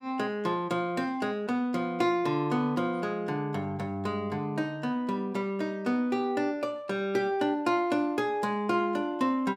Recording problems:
none

